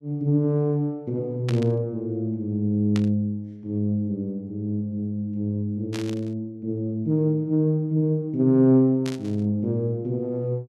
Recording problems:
burst of static; 4 times, first at 1.5 s; peak -6 dB vs average level

